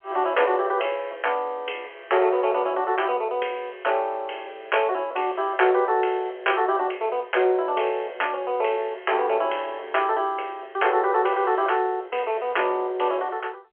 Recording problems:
telephone audio; 320 Hz to 3.3 kHz, G.711

